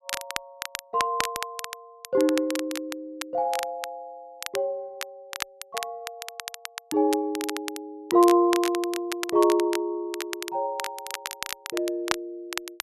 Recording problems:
crackle; vinyl, SNR 9 dB

